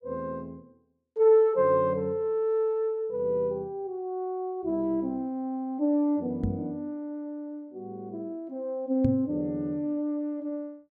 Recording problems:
microphone thump; at 6.5 s and at 9 s; peak +4 dB vs average level

